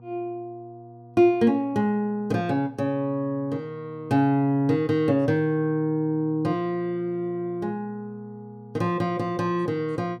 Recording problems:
hum; 60 Hz, harmonics up to 960 Hz, SNR 22 dB

